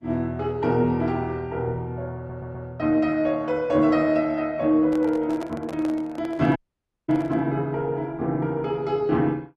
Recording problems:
lossy compression; Opus, log-spectral distance 2 dB
stutter; at 2 s
microphone handling noise; from 5 to 7.5 s; peak -8 dB vs average level
audio cutting out; at 6.5 s for 0.5 s

